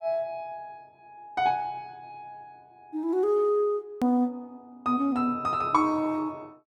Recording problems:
edit click; at 4 s

